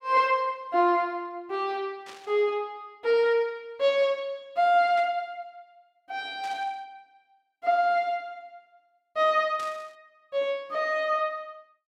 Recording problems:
burst of static; 4 times, first at 2 s; peak -13 dB vs average level

